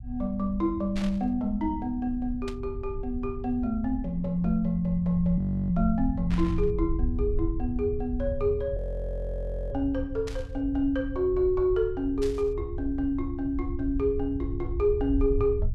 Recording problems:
rumble; below 80 Hz, SNR 7 dB
static burst; 5 times, first at 1 s; peak -7 dB vs average level
audio freezing; at 5.5 s and at 9 s for 1 s

